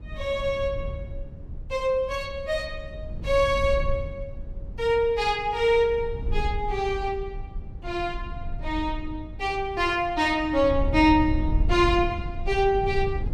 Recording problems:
low-frequency rumble; below 82 Hz, SNR 9 dB

